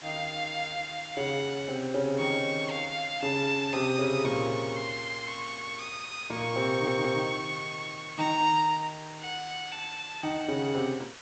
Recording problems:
treble cut off; nothing above 8 kHz
hiss; SNR 15 dB
stutter; at 6.5 s

